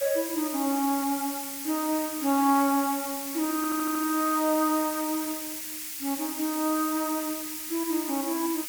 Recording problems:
background hiss; SNR 5 dB
audio stuttering; at 3.5 s

